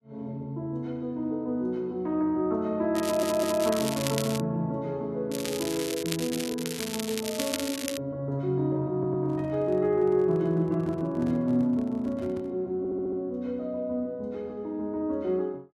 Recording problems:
crackle; from 3 to 4.5 s and from 5.5 to 8 s; loose cable, SNR 6 dB
stutter; at 3 s, at 9 s and at 13 s
handling noise; from 9 to 13 s; peak -9 dB vs average level

